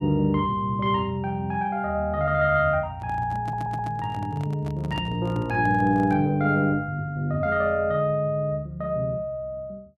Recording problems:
handling noise; from 3 to 6.5 s; peak -8 dB vs average level
audio stuttering; at 3.5 s

